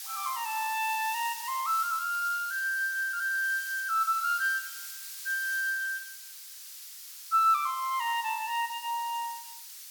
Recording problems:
background hiss; SNR 11 dB

